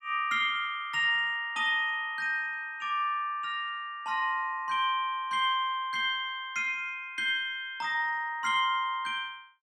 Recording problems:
none

